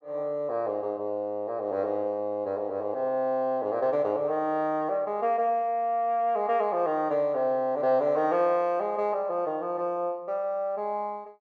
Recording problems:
none

